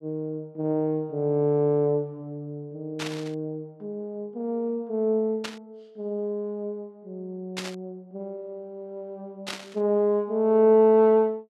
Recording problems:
static burst; 4 times, first at 3 s; peak -3 dB vs average level

